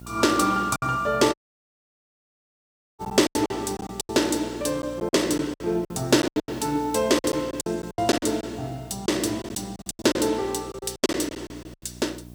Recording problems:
hum; 60 Hz, harmonics up to 720 Hz, SNR 20 dB
background hiss; slope -2 dB per octave, SNR 30 dB
lost packets; 13% of the sound replaced, filled with silence
audio cutting out; at 1.5 s for 1.5 s

